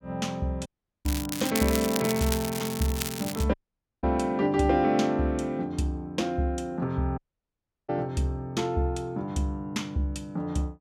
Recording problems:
dropout; at 0.5 s, at 3.5 s and at 7 s for 0.5 s
crackling; from 1 to 3.5 s; loose cable, SNR 5 dB

